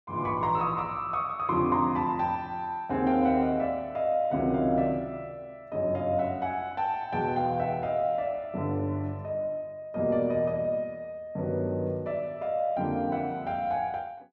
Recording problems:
none

